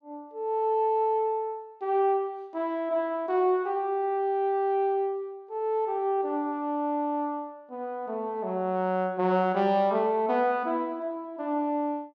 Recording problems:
none

